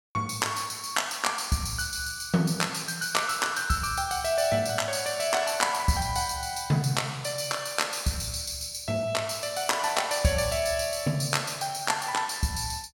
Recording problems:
none

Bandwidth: 17 kHz